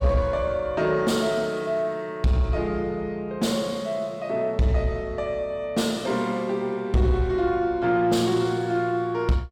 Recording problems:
distortion; soft clipping, signal-to-distortion ratio 11 dB

